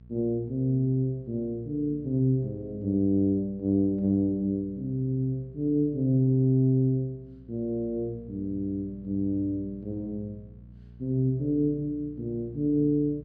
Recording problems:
hum; 60 Hz, harmonics up to 480 Hz, SNR 21 dB

